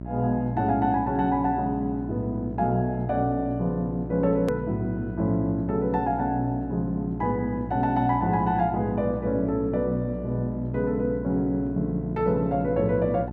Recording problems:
mains hum; 60 Hz, harmonics up to 720 Hz, SNR 9 dB
click at an edit; at 4.5 s

